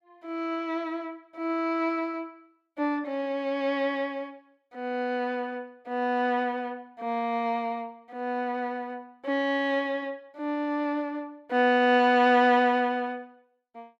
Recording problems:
none

